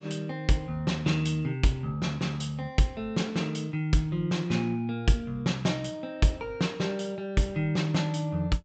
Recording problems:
treble missing; nothing above 8 kHz

